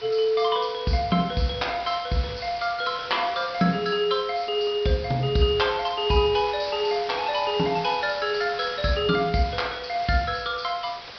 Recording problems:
low-pass filter; nothing above 5.5 kHz
background hiss; slope 0 dB per octave, SNR 14 dB

